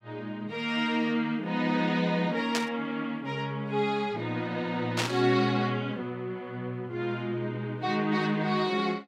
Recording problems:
static burst; at 2.5 s and at 5 s; peak +4 dB vs average level

